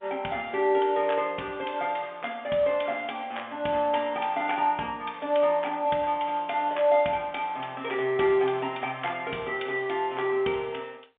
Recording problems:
phone line; 260 Hz to 3.6 kHz, G.711

